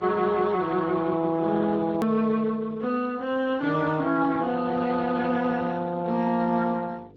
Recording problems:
codec artefacts; Speex, log-spectral distance 3 dB, nothing above 17.1 kHz
electrical hum; 50 Hz, harmonics up to 600 Hz, SNR 26 dB
hard cut with a click; at 2 s

